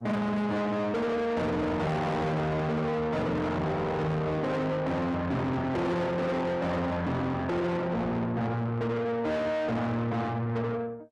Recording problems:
codec artefacts; Opus, log-spectral distance 2 dB, nothing above 12 kHz
distorted audio; soft clipping, signal-to-distortion ratio 4 dB

